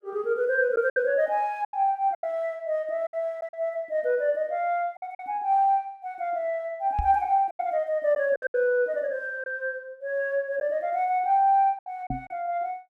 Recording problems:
packet loss; 6% of the sound replaced, filled with silence
knock on the microphone; at 7 s and at 12 s; peak 0 dB vs average level

